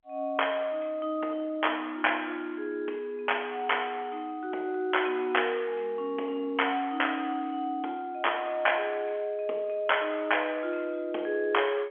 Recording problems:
telephone audio; 280 Hz to 3.4 kHz, G.711

